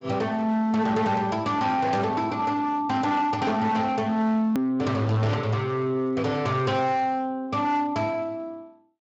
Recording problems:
codec artefacts; Speex, log-spectral distance 2 dB
distortion; hard clipping, signal-to-distortion ratio 10 dB
click at an edit; at 4.5 s

